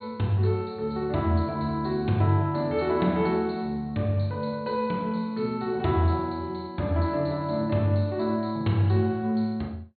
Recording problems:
treble cut off; nothing above 4.4 kHz

